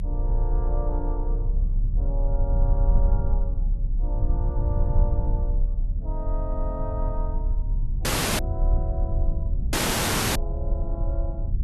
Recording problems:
low-frequency rumble; below 62 Hz, strongest tone 34 Hz, SNR -10 dB
dropout; at 8 s and at 9.5 s for 0.5 s

